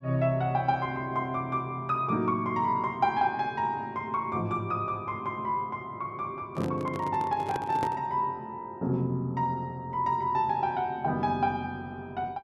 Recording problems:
handling noise; from 6.5 to 8 s; peak -1 dB vs average level

